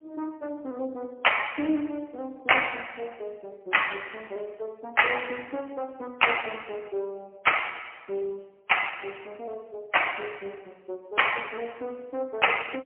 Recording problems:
telephone audio; 260 Hz to 3.1 kHz, AMR-NB, then MP3

